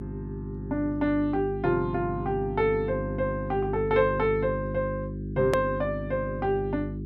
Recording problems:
hum; 50 Hz, harmonics up to 400 Hz, SNR 7 dB
edit click; at 5.5 s

